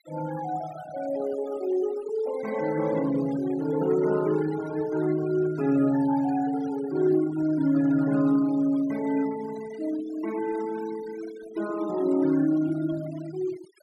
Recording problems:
noise reduction artefacts; signal-to-artefact ratio 17 dB

